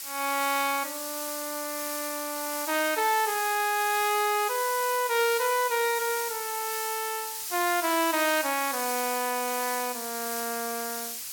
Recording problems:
background hiss; SNR 5 dB

